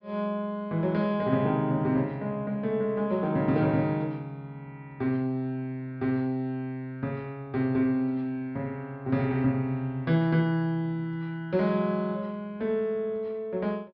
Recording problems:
treble cut off; nothing above 5.7 kHz

